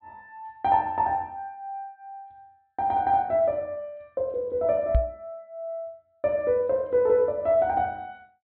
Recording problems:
low-pass filter; nothing above 4.4 kHz
microphone bump; at 5 s; peak +6 dB vs average level

